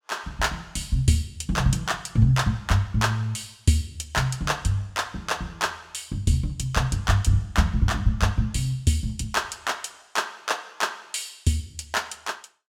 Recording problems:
none

